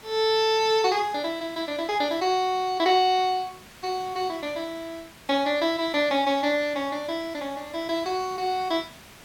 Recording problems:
background hiss; slope -2 dB per octave, SNR 22 dB

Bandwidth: 17 kHz